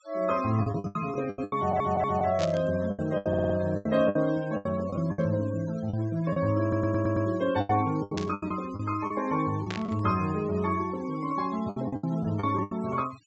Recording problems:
treble missing; nothing above 8 kHz
denoising artefacts; signal-to-artefact ratio 19 dB
lost packets; 13% of the sound replaced, filled with the last packet
audio stuttering; at 1.5 s, at 3.5 s and at 6.5 s
static burst; 4 times, first at 2.5 s; peak -3 dB vs average level

